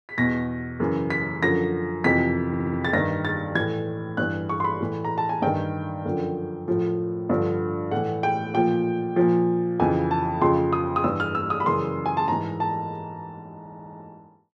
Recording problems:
audio stuttering; at 2.5 s and at 14 s

